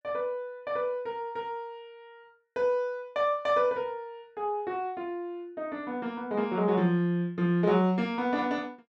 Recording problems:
none

